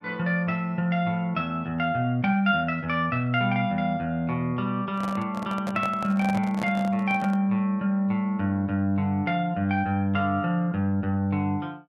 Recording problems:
handling noise; from 5 to 7.5 s; peak -4 dB vs average level

